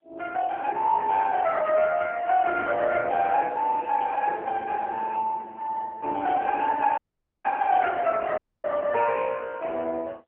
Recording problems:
phone line; 320 Hz to 2.1 kHz, AMR-NB
dropout; at 7 s and at 8.5 s

